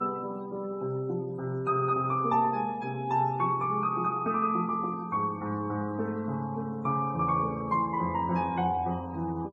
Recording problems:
noise reduction artefacts; signal-to-artefact ratio 24 dB

